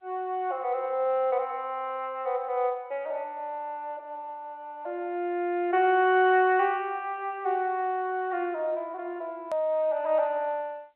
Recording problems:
phone line; 300 Hz to 3.3 kHz, G.711
edit click; at 9.5 s

